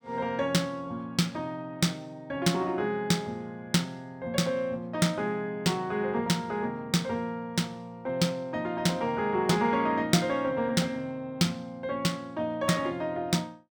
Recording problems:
none

